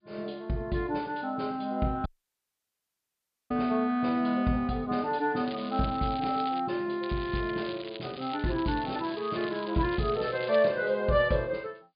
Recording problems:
treble missing; nothing above 4.9 kHz
lossy compression; G.722, log-spectral distance 6 dB
audio cutting out; at 2 s for 1.5 s
crackling; from 5.5 to 6.5 s and from 7 to 11 s; loose cable, SNR 16 dB

